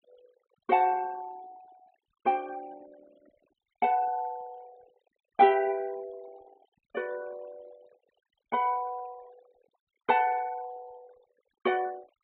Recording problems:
low-pass filter; nothing above 4 kHz
noise reduction artefacts; signal-to-artefact ratio 25 dB

